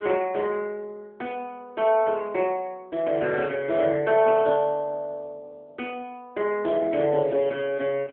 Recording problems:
phone line; 220 Hz to 3.1 kHz, AMR-NB

